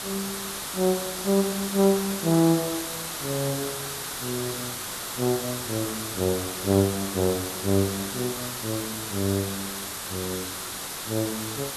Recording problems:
hiss; slope -1 dB per octave, SNR 4 dB

